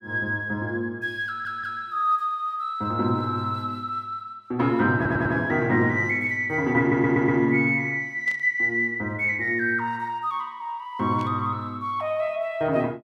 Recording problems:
audio stuttering; at 1.5 s, at 5 s and at 7 s
burst of static; at 8.5 s and at 11 s; peak -15 dB vs average level

